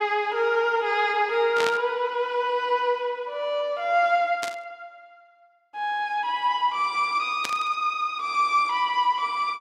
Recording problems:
burst of static; at 1.5 s, at 4.5 s and at 7.5 s; peak -1 dB vs average level

